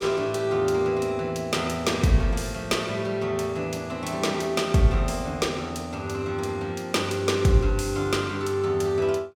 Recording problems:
none

